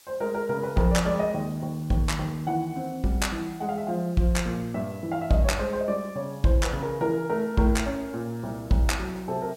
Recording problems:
background hiss; slope +1 dB per octave, SNR 25 dB

